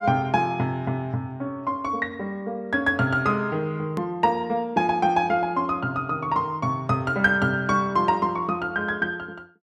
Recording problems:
edit click; at 4 s

